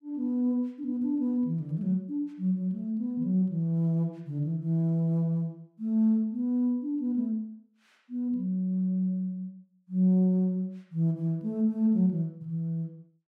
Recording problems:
none

